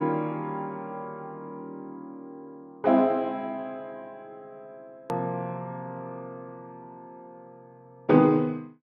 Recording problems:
edit click; at 5 s

